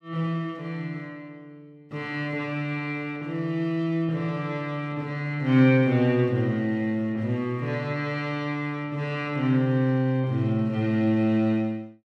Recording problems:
none

